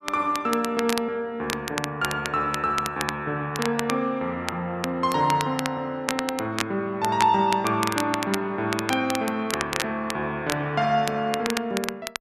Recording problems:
crackling; vinyl, SNR 7 dB

